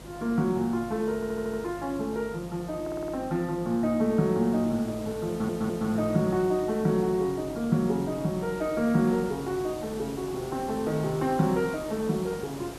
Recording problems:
hum; 50 Hz, harmonics up to 350 Hz, SNR 20 dB
background hiss; slope -5 dB per octave, SNR 16 dB
audio stuttering; at 1 s, at 3 s and at 5.5 s

